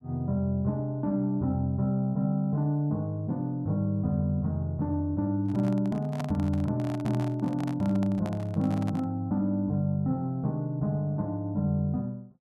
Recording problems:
microphone handling noise; from 5.5 to 9 s; peak -3 dB vs average level

